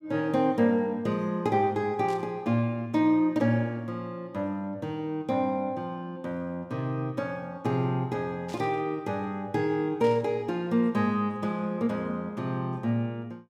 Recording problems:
burst of static; at 2 s, at 8.5 s and at 10 s; peak -12 dB vs average level

